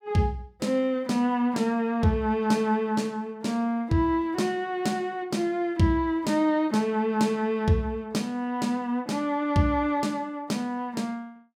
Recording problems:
none

